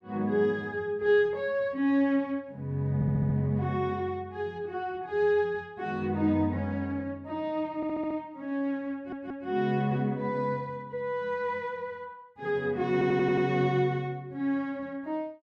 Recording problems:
stutter; 4 times, first at 3 s

